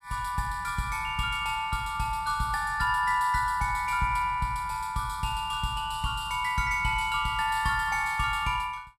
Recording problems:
none

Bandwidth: 14.5 kHz